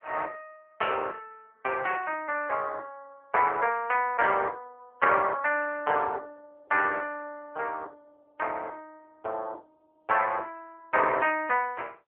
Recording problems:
phone line; 320 Hz to 3.1 kHz, AMR-NB

